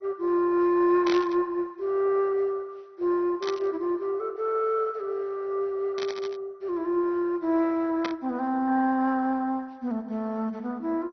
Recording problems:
codec artefacts; MP2, log-spectral distance 3 dB, nothing above 6 kHz
static burst; 4 times, first at 1 s; peak -2 dB vs average level

